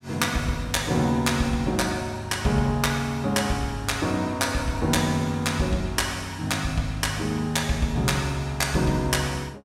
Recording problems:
none

